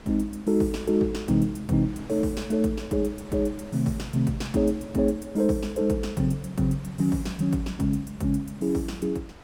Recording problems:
wind on the microphone; below 1.1 kHz, SNR 21 dB

